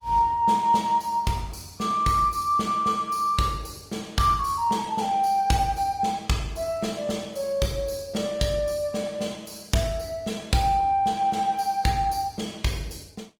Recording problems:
codec artefacts; Opus, log-spectral distance 4 dB, nothing above 19 kHz

